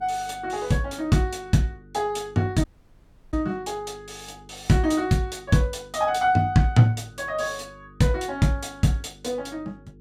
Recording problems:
electrical hum; 50 Hz, harmonics up to 450 Hz, SNR 26 dB
audio cutting out; at 2.5 s for 0.5 s

